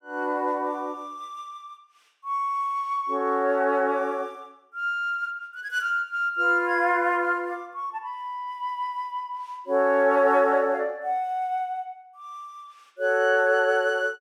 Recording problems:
none

